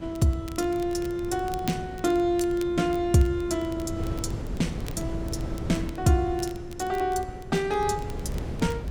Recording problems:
wind noise; below 220 Hz, SNR 9 dB
crackle; vinyl, SNR 21 dB

